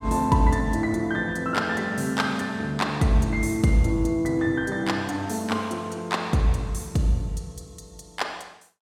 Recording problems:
none

